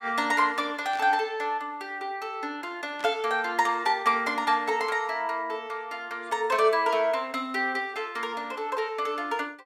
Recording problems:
burst of static; at 1 s, at 3 s and at 6.5 s; peak -13 dB vs average level

